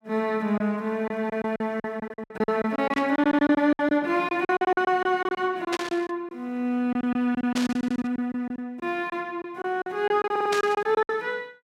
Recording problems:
lost packets; 14% of the sound replaced, filled with silence
static burst; 4 times, first at 3 s; peak -1 dB vs average level
audio stuttering; at 3 s, at 8 s and at 10 s

